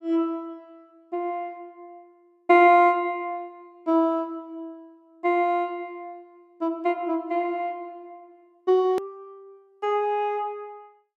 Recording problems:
hard cut with a click; at 9 s

